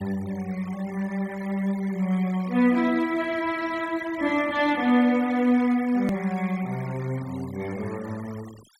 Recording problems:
denoising artefacts; signal-to-artefact ratio 21 dB
edit click; at 6 s

